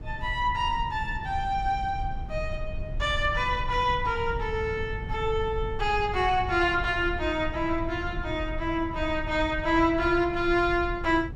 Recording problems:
rumble; below 94 Hz, SNR 10 dB

